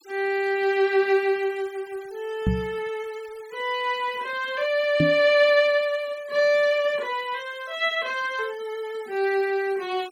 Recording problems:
denoising artefacts; signal-to-artefact ratio 25 dB
knock on the microphone; at 2.5 s and at 5 s; peak +4 dB vs average level

